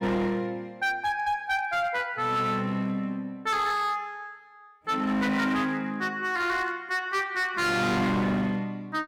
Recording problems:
distortion; hard clipping, signal-to-distortion ratio 8 dB

